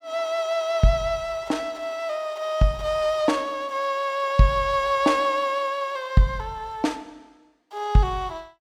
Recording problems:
none

